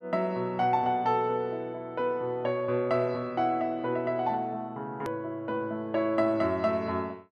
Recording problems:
click at an edit; at 5 s

